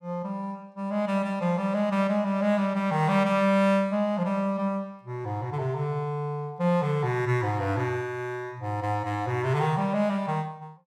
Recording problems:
none

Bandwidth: 15.5 kHz